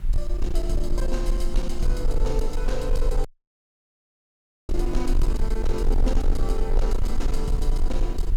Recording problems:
distortion; hard clipping, uneven, signal-to-distortion ratio 11 dB
hum; 60 Hz, harmonics up to 420 Hz, SNR 12 dB
background hiss; SNR 21 dB
low-frequency rumble; below 36 Hz, strongest tone 18 Hz, SNR -3 dB
audio cutting out; at 3.5 s for 1.5 s

